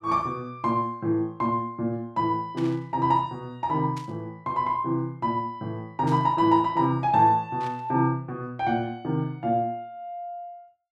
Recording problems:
static burst; 4 times, first at 2.5 s; peak -12 dB vs average level

